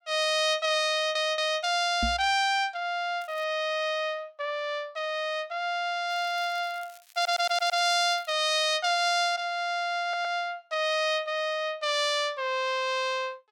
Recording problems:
audio stuttering; at 1 s, at 7 s and at 10 s
microphone bump; at 2 s; peak -1 dB vs average level
crackle; at 3 s and from 6 to 8.5 s; loose cable, SNR 26 dB

